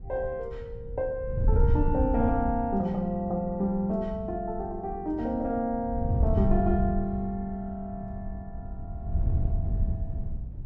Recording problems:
wind noise; below 94 Hz, SNR 2 dB

